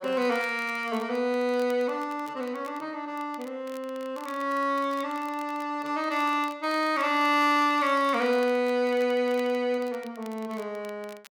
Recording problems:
crackle; vinyl, SNR 24 dB

